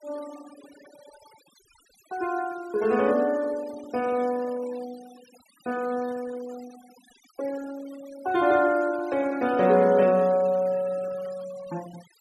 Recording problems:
denoising artefacts; signal-to-artefact ratio 21 dB

